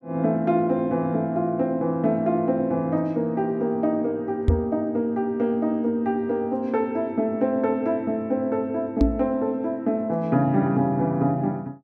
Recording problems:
microphone thump; at 4.5 s and at 9 s; peak +8 dB vs average level

